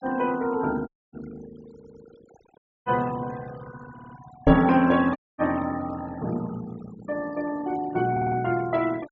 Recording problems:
treble cut off; nothing above 8 kHz
denoising artefacts; signal-to-artefact ratio 19 dB
dropout; at 1 s, at 2.5 s and at 5 s
audio stuttering; at 1.5 s, at 4 s and at 8 s
microphone thump; at 4.5 s; peak +9 dB vs average level

